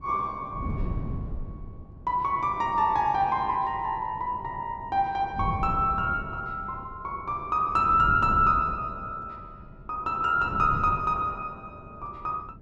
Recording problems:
wind on the microphone; below 170 Hz, SNR 11 dB

